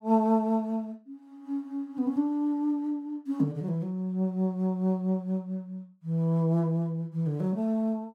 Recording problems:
none

